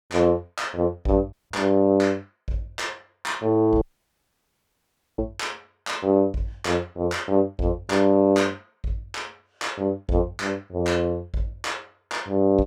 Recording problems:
dropout; at 1.5 s and at 4 s for 1.5 s

